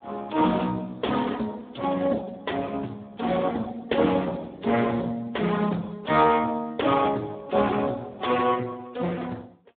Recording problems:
phone line; 190 Hz to 3.7 kHz, Speex

